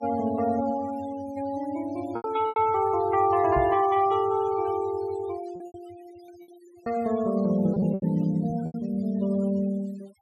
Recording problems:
denoising artefacts; signal-to-artefact ratio 20 dB
packet loss; 6% of the sound replaced, filled with repeated pitch periods
knock on the microphone; at 3.5 s; peak -3 dB vs average level

